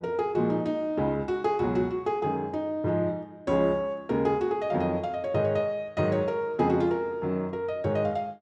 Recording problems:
none

